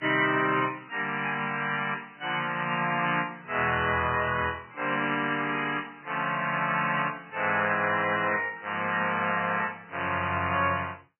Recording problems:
lossy codec; MP3, log-spectral distance 5 dB, nothing above 3 kHz

